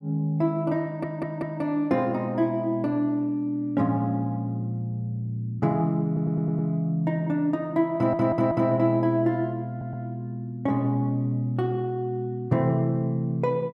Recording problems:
audio stuttering; 4 times, first at 1 s

